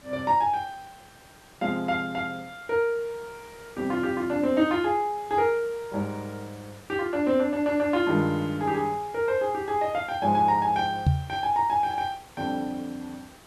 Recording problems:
background hiss; slope -4 dB per octave, SNR 23 dB
knock on the microphone; at 11 s; peak +8 dB vs average level

